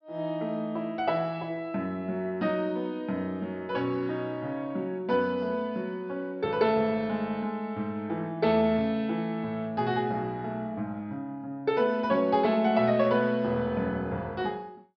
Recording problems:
treble missing; nothing above 5.5 kHz

